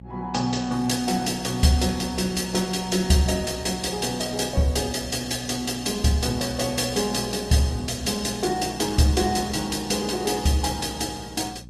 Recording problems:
codec artefacts; Opus, log-spectral distance 5 dB, nothing above 13.8 kHz
mains hum; 60 Hz, harmonics up to 600 Hz, SNR 18 dB

